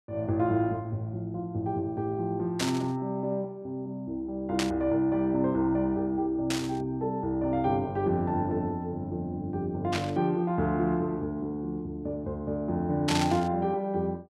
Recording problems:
burst of static; 5 times, first at 2.5 s; peak +3 dB vs average level

